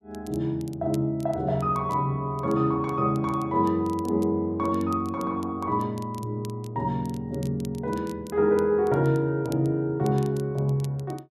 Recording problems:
crackle; vinyl, SNR 25 dB

